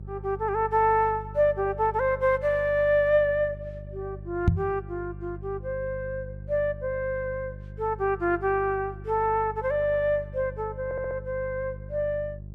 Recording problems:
hum; 50 Hz, harmonics up to 400 Hz, SNR 14 dB
microphone thump; at 4.5 s; peak +10 dB vs average level
audio stuttering; at 11 s

